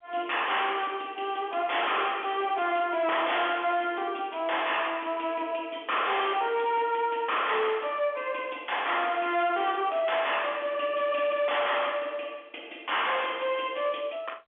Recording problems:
telephone audio; 240 Hz to 3.4 kHz, G.711
distortion; soft clipping, signal-to-distortion ratio 5 dB

